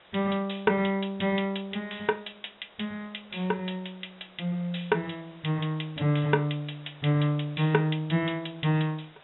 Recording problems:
low-pass filter; nothing above 3.8 kHz
hiss; SNR 24 dB

